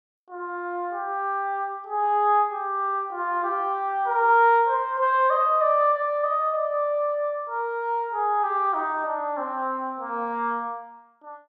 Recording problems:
none

